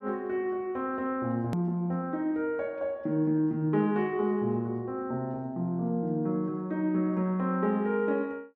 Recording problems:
click at an edit; at 1.5 s

